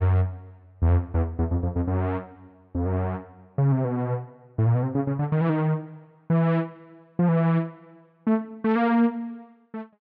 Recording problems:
none

